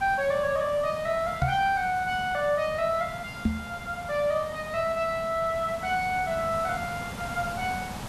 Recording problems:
hiss; SNR 12 dB
microphone thump; at 1.5 s and at 3.5 s; peak +6 dB vs average level

